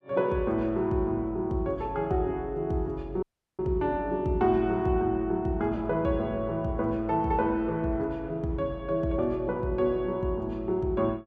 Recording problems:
audio cutting out; at 3 s

